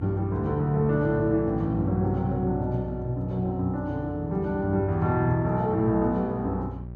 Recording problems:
mains hum; 60 Hz, harmonics up to 600 Hz, SNR 12 dB

